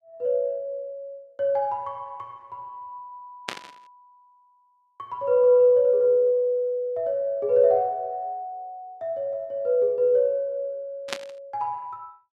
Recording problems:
burst of static; at 3.5 s and at 11 s; peak -1 dB vs average level

